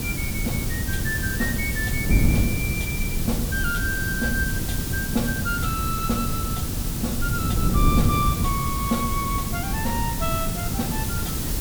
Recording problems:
background hiss; slope 0 dB per octave, SNR 2 dB
wind noise; below 190 Hz, SNR -2 dB

